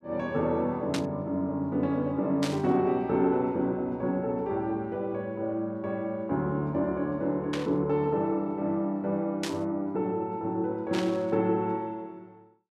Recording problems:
burst of static; 5 times, first at 1 s; peak -1 dB vs average level

